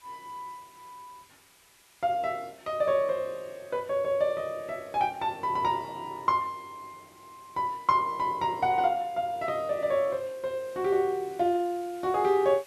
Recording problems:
hiss; SNR 27 dB

